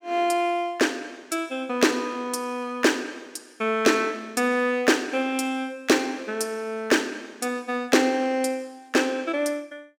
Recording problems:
none

